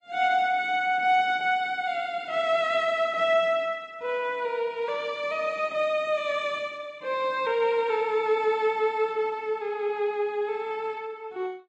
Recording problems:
lossy compression; Vorbis, then MP3, log-spectral distance 2 dB

